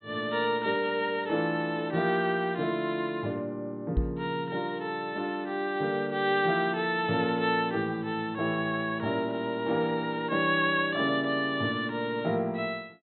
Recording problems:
treble missing; nothing above 4.1 kHz
microphone bump; at 4 s; peak +4 dB vs average level

